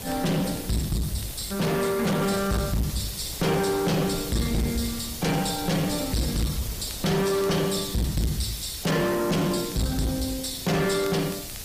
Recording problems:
codec artefacts; Opus, log-spectral distance 7 dB, nothing above 15.1 kHz
distortion; soft clipping, signal-to-distortion ratio 7 dB
background hiss; slope +2 dB per octave, SNR 11 dB
wind on the microphone; below 290 Hz, SNR 17 dB
crackling; vinyl, SNR 24 dB

